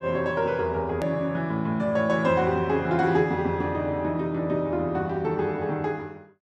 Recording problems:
click at an edit; at 1 s

